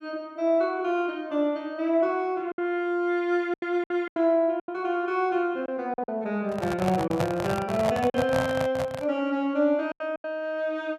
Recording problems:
lost packets; 6% of the sound replaced, filled with silence
handling noise; from 6.5 to 9 s; peak +2 dB vs average level

